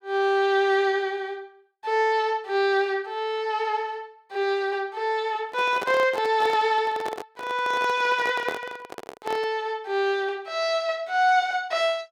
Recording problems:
handling noise; from 5.5 to 9.5 s; peak -2 dB vs average level

